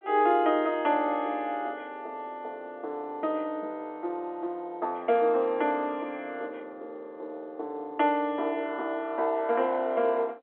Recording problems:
telephone audio; 300 Hz to 3.4 kHz, G.711

